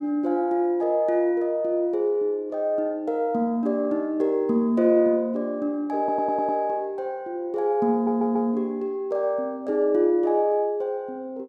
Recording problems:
audio stuttering; at 6 s and at 8 s

